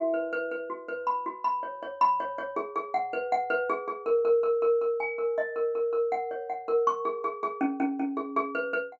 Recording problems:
low-pass filter; nothing above 8 kHz

